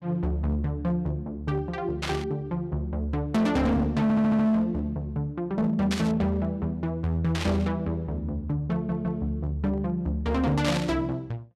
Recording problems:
distortion; hard clipping, signal-to-distortion ratio 12 dB
burst of static; 4 times, first at 2 s; peak +1 dB vs average level
stutter; at 4 s and at 8.5 s

